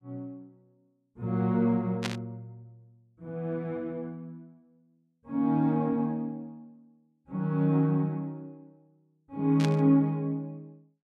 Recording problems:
burst of static; at 2 s and at 9.5 s; peak 0 dB vs average level

